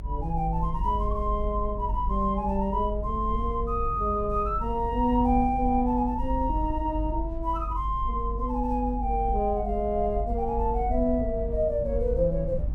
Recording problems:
low-frequency rumble; below 56 Hz, strongest tone 48 Hz, SNR 6 dB

